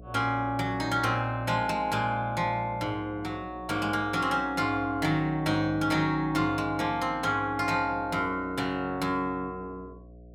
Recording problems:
hum; 60 Hz, harmonics up to 720 Hz, SNR 20 dB

